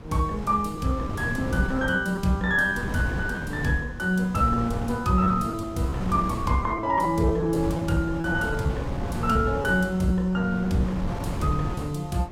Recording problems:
wind on the microphone; below 320 Hz, SNR 8 dB
lost packets; 6% of the sound replaced, filled with repeated pitch periods

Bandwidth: 16.5 kHz